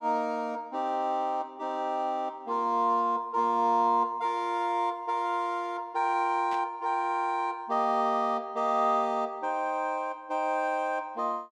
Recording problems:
burst of static; at 6.5 s; peak -12 dB vs average level

